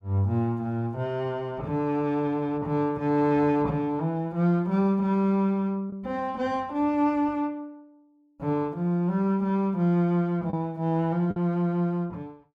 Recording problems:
packet loss; 0.9% of the sound replaced, filled with the last packet

